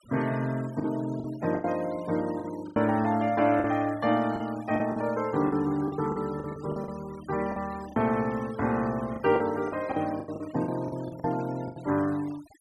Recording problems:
noise reduction artefacts; signal-to-artefact ratio 20 dB
packet loss; 11% of the sound replaced, filled with the last packet

